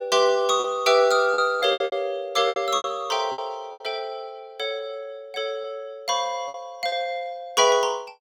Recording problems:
packet loss; 8% of the sound replaced, filled with repeated pitch periods

